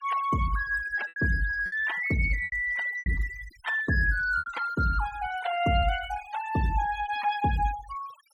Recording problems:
denoising artefacts; signal-to-artefact ratio 14 dB
packet loss; 5% of the sound replaced, filled with repeated pitch periods

